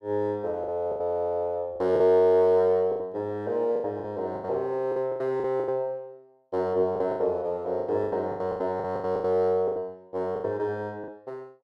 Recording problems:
lost packets; 14% of the sound replaced, filled with the last packet

